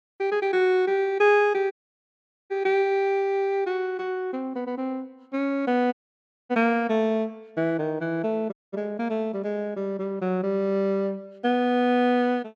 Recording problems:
audio cutting out; at 1.5 s for 1 s, at 6 s for 0.5 s and at 8.5 s

